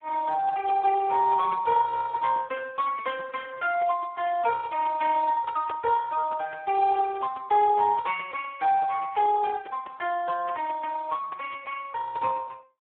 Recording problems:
phone line; 320 Hz to 2.1 kHz, Speex

